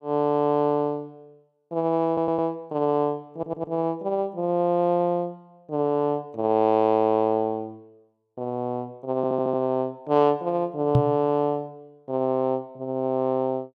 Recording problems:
audio stuttering; at 2 s, at 3.5 s and at 9 s
microphone bump; at 11 s; peak +8 dB vs average level

